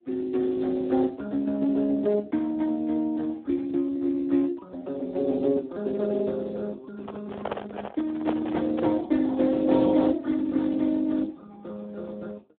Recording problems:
phone line; 240 Hz to 2.1 kHz, Speex
microphone handling noise; from 7 to 9 s; peak 0 dB vs average level

